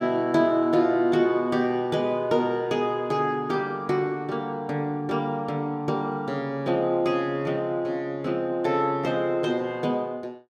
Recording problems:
none

